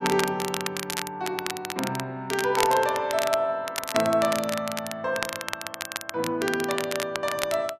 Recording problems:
crackle; vinyl, SNR 6 dB

